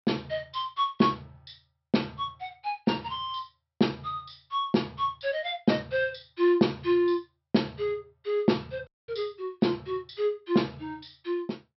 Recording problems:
low-pass filter; nothing above 5.6 kHz
audio cutting out; at 9 s

